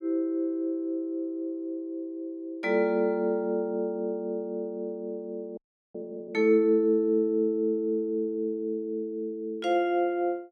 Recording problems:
audio freezing; at 5.5 s

